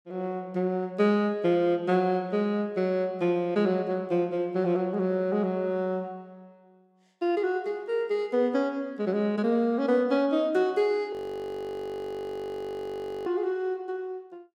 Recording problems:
audio freezing; at 11 s for 2 s

